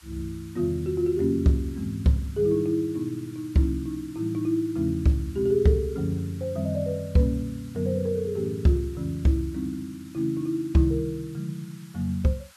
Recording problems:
background hiss; SNR 25 dB

